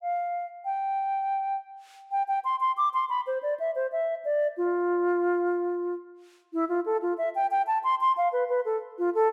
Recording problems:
none

